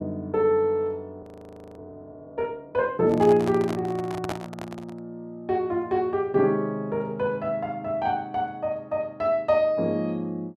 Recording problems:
audio freezing; at 1 s for 0.5 s
handling noise; from 3 to 5 s; peak -2 dB vs average level

